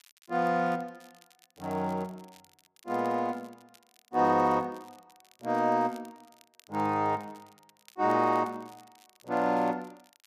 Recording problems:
crackle; vinyl, SNR 30 dB

